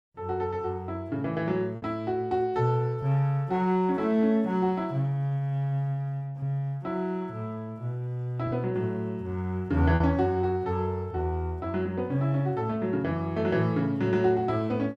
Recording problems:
lost packets; 1.2% of the sound replaced, filled with repeated pitch periods

